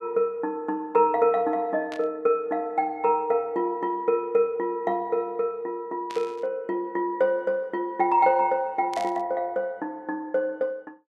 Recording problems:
burst of static; at 2 s, at 6 s and at 9 s; peak -10 dB vs average level

